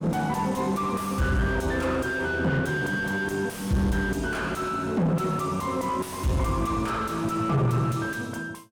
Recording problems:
distorted audio; soft clipping, signal-to-distortion ratio 7 dB

